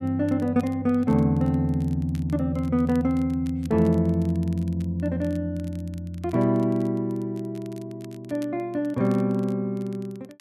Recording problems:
crackle; vinyl, SNR 29 dB

